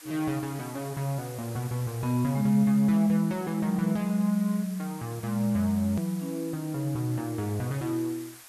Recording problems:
background hiss; SNR 18 dB
edit click; at 6 s

